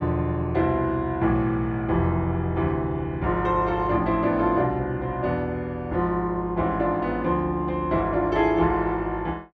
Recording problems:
none

